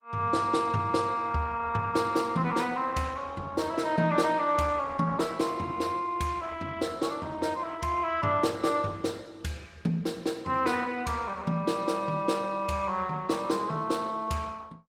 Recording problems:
lossy codec; Opus, log-spectral distance 3 dB, nothing above 19 kHz

